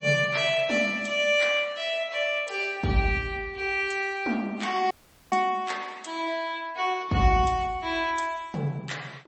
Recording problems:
codec artefacts; MP3, then MP3, log-spectral distance 2 dB, nothing above 8 kHz
dropout; at 5 s

